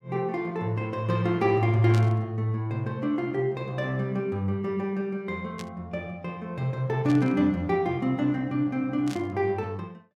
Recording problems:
static burst; 4 times, first at 2 s; peak -8 dB vs average level

